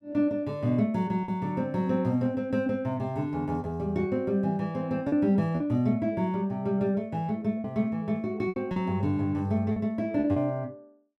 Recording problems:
packet loss; 4% of the sound replaced, filled with repeated pitch periods

